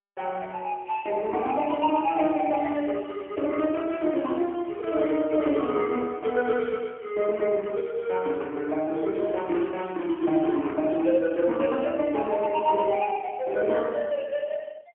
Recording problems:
telephone audio; 190 Hz to 2.8 kHz, AMR-NB, then MP3

